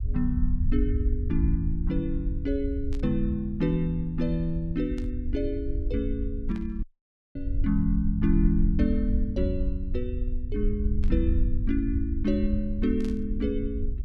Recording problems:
rumble; below 70 Hz, SNR 2 dB
burst of static; 5 times, first at 3 s; peak -13 dB vs average level
dropout; at 7 s for 0.5 s

